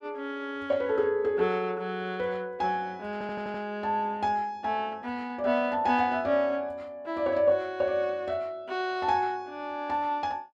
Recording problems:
stutter; at 3 s

